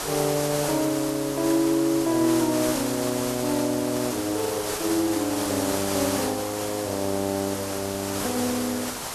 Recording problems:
background hiss; slope -3 dB per octave, SNR 5 dB

